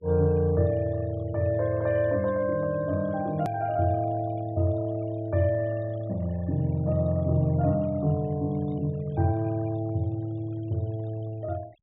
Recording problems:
treble missing; nothing above 4 kHz
noise reduction artefacts; signal-to-artefact ratio 28 dB
hard cut with a click; at 3.5 s

